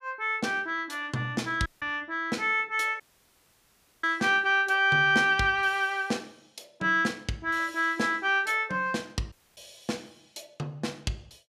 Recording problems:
dropout; at 1.5 s, at 3 s for 1 s and at 9.5 s

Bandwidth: 15 kHz